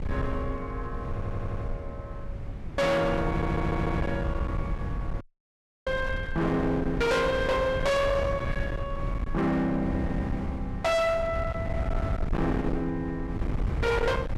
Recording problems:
distorted audio; hard clipping, signal-to-distortion ratio 6 dB
wind noise; below 210 Hz, SNR 5 dB
audio stuttering; at 1 s and at 3.5 s
dropout; at 5 s for 0.5 s

